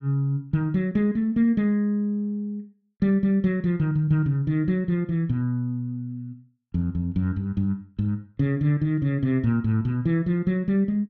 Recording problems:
none

